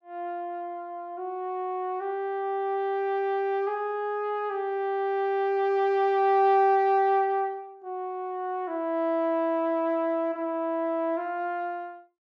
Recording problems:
none

